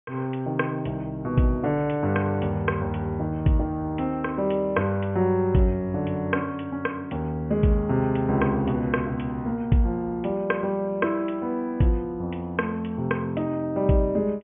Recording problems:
treble missing; nothing above 3 kHz

